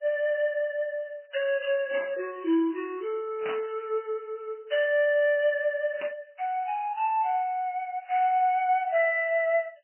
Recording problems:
codec artefacts; MP3, log-spectral distance 2 dB, nothing above 3 kHz
burst of static; at 2 s, at 3.5 s and at 6 s; peak -5 dB vs average level

